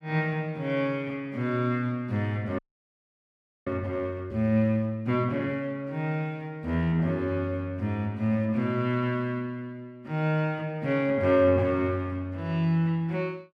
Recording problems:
audio freezing; at 2.5 s for 1 s

